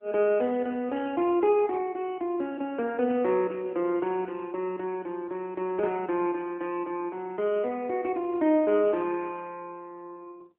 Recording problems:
telephone audio; 260 Hz to 3.1 kHz, AMR-NB

